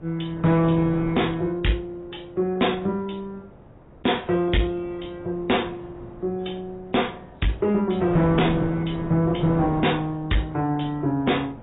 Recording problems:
lossy codec; AAC, log-spectral distance 3 dB, nothing above 3.7 kHz
distorted audio; soft clipping, signal-to-distortion ratio 11 dB
wind noise; below 560 Hz, SNR 12 dB

